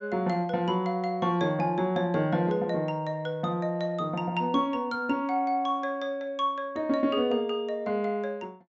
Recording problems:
low-pass filter; nothing above 8 kHz

